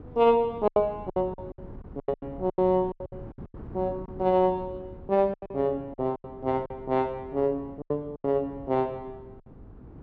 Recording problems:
wind noise; below 290 Hz, SNR 18 dB
packet loss; 13% of the sound replaced, filled with silence

